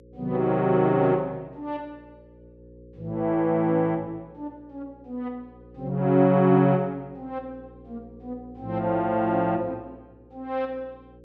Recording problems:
hum; 60 Hz, harmonics up to 540 Hz, SNR 25 dB

